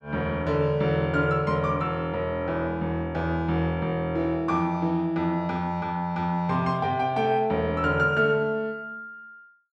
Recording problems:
none

